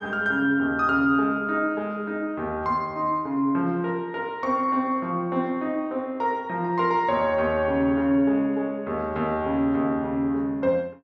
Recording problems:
none

